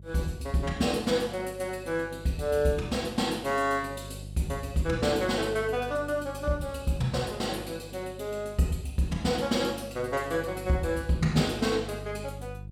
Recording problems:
hum; 50 Hz, harmonics up to 350 Hz, SNR 15 dB

